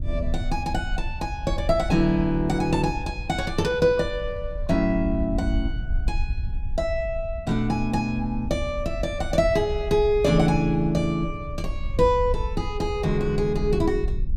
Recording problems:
wind on the microphone; below 64 Hz, SNR 8 dB

